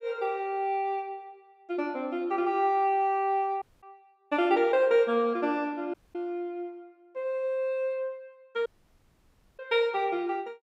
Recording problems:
audio cutting out; at 3.5 s, at 6 s and at 8.5 s for 1 s

